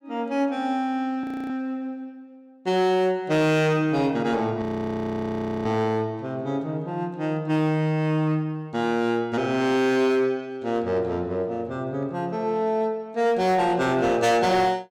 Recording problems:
distorted audio; hard clipping, signal-to-distortion ratio 11 dB
frozen audio; at 1 s and at 4.5 s for 1 s

